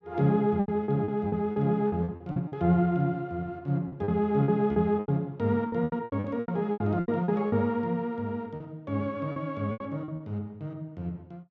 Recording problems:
lost packets; 13% of the sound replaced, filled with repeated pitch periods

